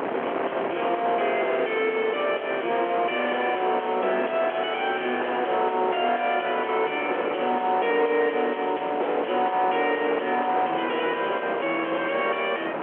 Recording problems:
phone line; 300 Hz to 3.1 kHz, G.711
distortion; soft clipping, signal-to-distortion ratio 6 dB
wind noise; below 1.2 kHz, SNR 6 dB

